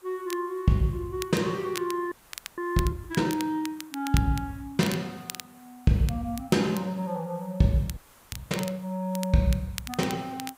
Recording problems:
background hiss; SNR 27 dB
crackling; vinyl, SNR 13 dB
frozen audio; at 2 s and at 8 s

